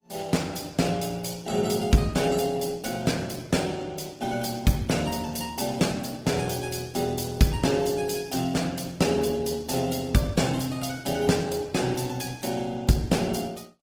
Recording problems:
codec artefacts; Opus, log-spectral distance 6 dB

